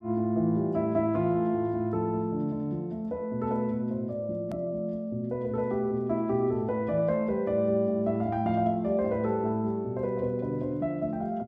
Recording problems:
hard cut with a click; at 4.5 s

